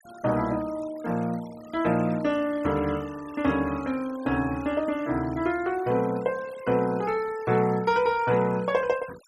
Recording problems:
denoising artefacts; signal-to-artefact ratio 21 dB

